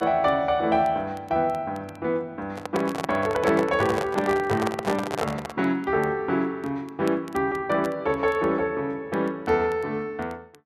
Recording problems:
crackling; vinyl, SNR 28 dB
handling noise; from 2.5 to 5.5 s; peak +1 dB vs average level

